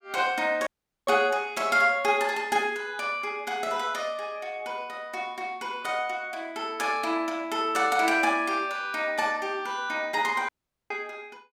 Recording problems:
audio cutting out; at 0.5 s and at 10 s

